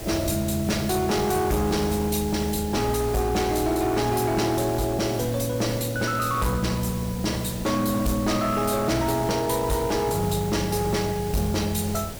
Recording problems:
distorted audio; hard clipping, signal-to-distortion ratio 11 dB
background hiss; SNR 11 dB

